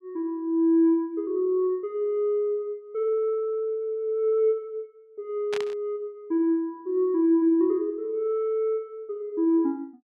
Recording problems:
static burst; at 5.5 s; peak -6 dB vs average level

